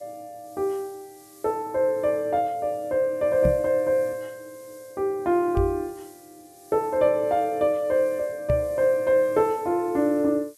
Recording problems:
hiss; SNR 27 dB
microphone bump; at 3.5 s, at 5.5 s and at 8.5 s; peak +1 dB vs average level

